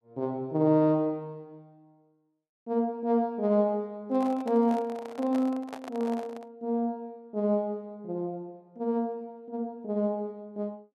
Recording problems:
handling noise; from 4 to 6.5 s; peak -6 dB vs average level

